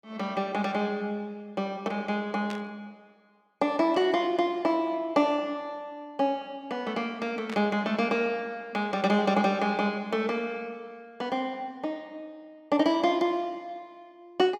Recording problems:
static burst; at 2.5 s and at 7.5 s; peak -7 dB vs average level

